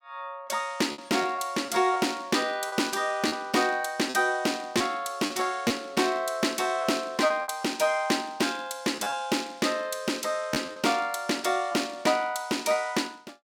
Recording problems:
lost packets; 5% of the sound replaced, filled with repeated pitch periods

